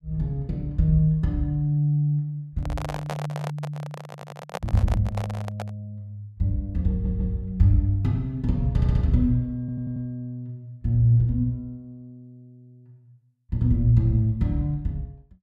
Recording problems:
microphone handling noise; from 2.5 to 6 s; peak -3 dB vs average level
audio stuttering; 4 times, first at 4 s

